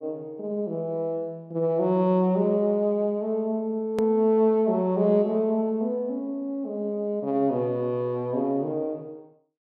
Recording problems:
hard cut with a click; at 4 s

